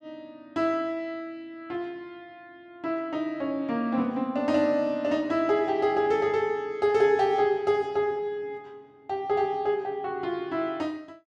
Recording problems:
none

